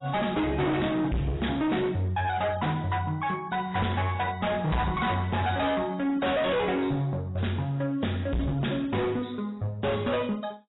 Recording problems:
lossy compression; AAC, log-spectral distance 4 dB, nothing above 3.8 kHz
distorted audio; hard clipping, signal-to-distortion ratio 6 dB

